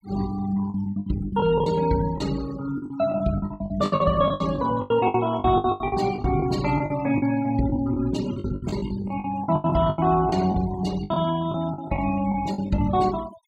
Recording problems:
noise reduction artefacts; signal-to-artefact ratio 18 dB
lost packets; 16% of the sound replaced, filled with the last packet

